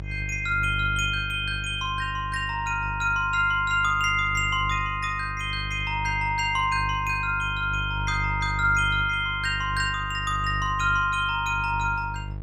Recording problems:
hum; 50 Hz, harmonics up to 500 Hz, SNR 9 dB

